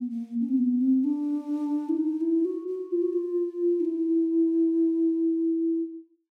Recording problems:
none

